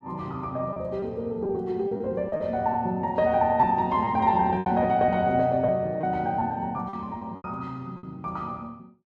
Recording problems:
packet loss; 7% of the sound replaced, filled with repeated pitch periods

